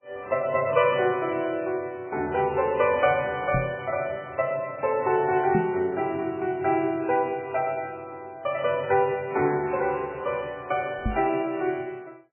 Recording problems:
lossy codec; MP3, log-spectral distance 3 dB, nothing above 2.7 kHz
microphone thump; at 3.5 s, at 5.5 s and at 11 s; peak +2 dB vs average level

